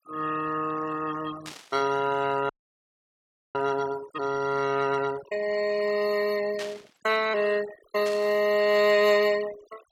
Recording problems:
noise reduction artefacts; signal-to-artefact ratio 15 dB
burst of static; at 1.5 s, at 6.5 s and at 8 s; peak -7 dB vs average level
frozen audio; at 2.5 s for 1 s

